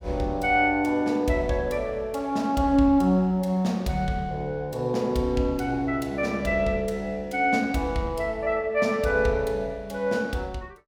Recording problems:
none

